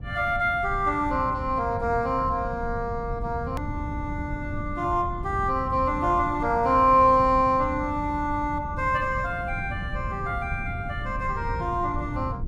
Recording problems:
low-frequency rumble; below 140 Hz, SNR 9 dB
hard cut with a click; at 3.5 s

